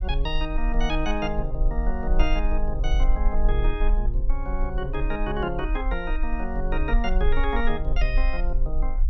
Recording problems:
low-frequency rumble; below 42 Hz, strongest tone 20 Hz, SNR -2 dB

